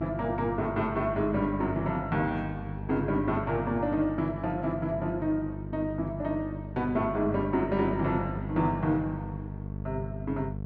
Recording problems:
hum; 50 Hz, harmonics up to 700 Hz, SNR 8 dB

